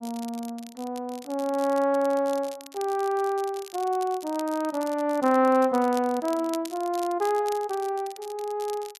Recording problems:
crackling; vinyl, SNR 19 dB

